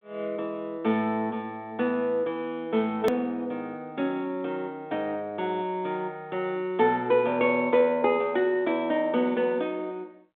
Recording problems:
telephone audio; 190 Hz to 3.6 kHz, G.726
edit click; at 3 s

